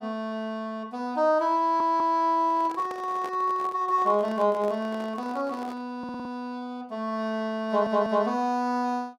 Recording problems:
audio stuttering; at 1.5 s, at 6 s and at 7.5 s
handling noise; from 2.5 to 6 s; peak -9 dB vs average level

